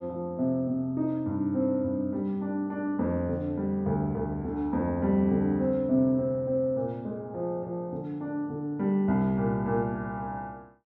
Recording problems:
none

